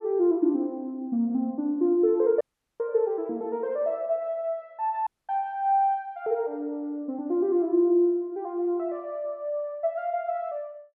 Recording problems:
audio cutting out; at 2.5 s and at 5 s

